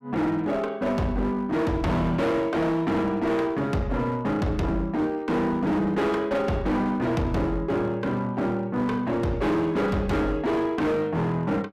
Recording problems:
distortion; hard clipping, uneven, signal-to-distortion ratio 7 dB

